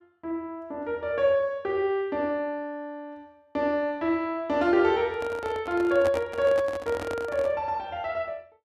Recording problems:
handling noise; from 5 to 7.5 s; peak -2 dB vs average level

